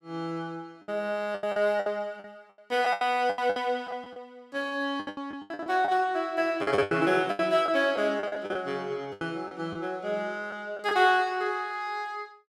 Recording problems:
packet loss; 13% of the sound replaced, filled with the last packet

